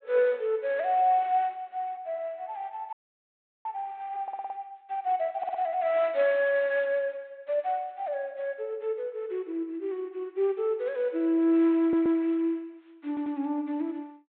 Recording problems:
low-pass filter; nothing above 4 kHz
frozen audio; at 3 s for 0.5 s
audio stuttering; 4 times, first at 4 s

